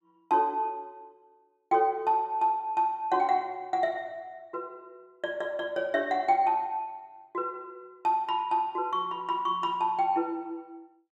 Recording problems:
none

